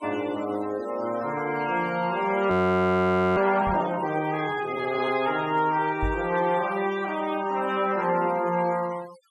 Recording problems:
noise reduction artefacts; signal-to-artefact ratio 18 dB
frozen audio; at 2.5 s for 1 s
microphone thump; at 3.5 s and at 6 s; peak -1 dB vs average level

